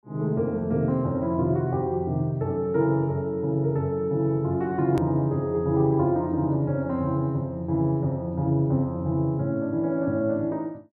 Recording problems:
edit click; at 5 s

